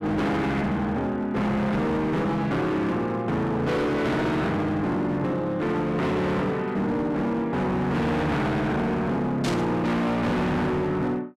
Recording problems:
distortion; hard clipping, signal-to-distortion ratio 7 dB
burst of static; at 9.5 s; peak -3 dB vs average level

